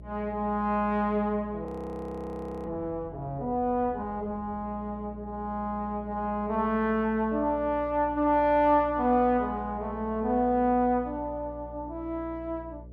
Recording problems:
hum; 60 Hz, harmonics up to 660 Hz, SNR 17 dB
frozen audio; at 1.5 s for 1 s

